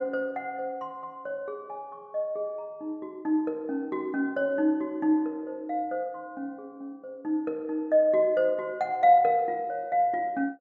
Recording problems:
none

